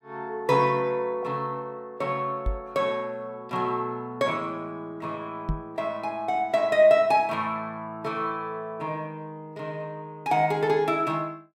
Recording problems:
microphone thump; at 2.5 s and at 5.5 s; peak +2 dB vs average level

